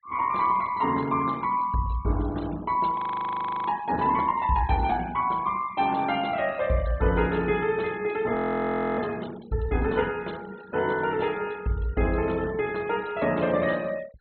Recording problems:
treble missing; nothing above 4.2 kHz
denoising artefacts; signal-to-artefact ratio 21 dB
frozen audio; at 3 s for 0.5 s and at 8.5 s for 0.5 s

